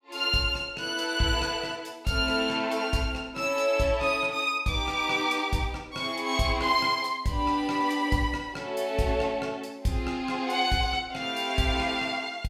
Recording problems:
none

